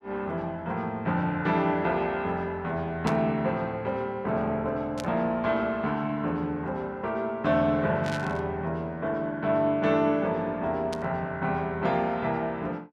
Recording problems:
static burst; 4 times, first at 3 s; peak -5 dB vs average level

